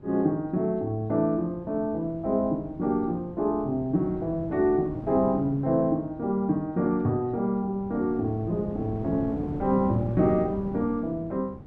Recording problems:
wind on the microphone; below 310 Hz, SNR 13 dB

